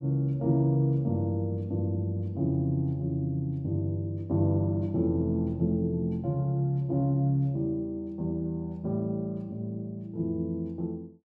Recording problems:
none

